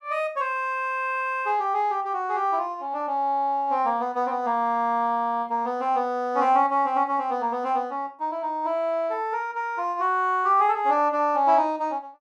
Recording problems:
none

